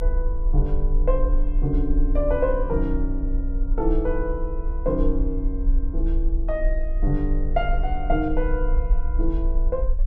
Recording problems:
low-frequency rumble; below 42 Hz, strongest tone 30 Hz, SNR -1 dB

